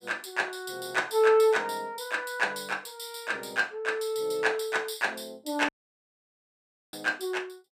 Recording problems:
audio cutting out; at 5.5 s for 1 s

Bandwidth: 15.5 kHz